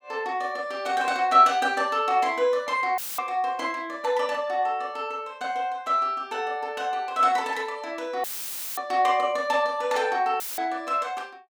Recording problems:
dropout; at 3 s, at 8 s for 0.5 s and at 10 s; filled with static

